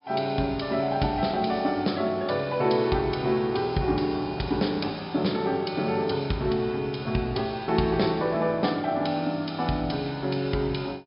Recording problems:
treble cut off; nothing above 5.5 kHz

